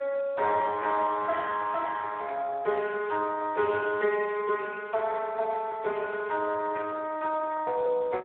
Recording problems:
telephone audio; 340 Hz to 3 kHz, Speex

